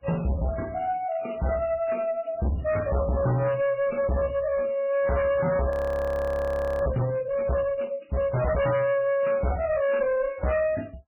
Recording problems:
codec artefacts; MP3, then MP3, log-spectral distance 3 dB
distortion; hard clipping, uneven, signal-to-distortion ratio 6 dB
audio freezing; at 5.5 s for 1 s

